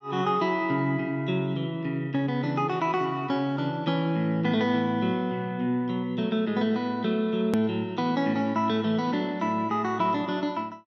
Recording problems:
click at an edit; at 7.5 s

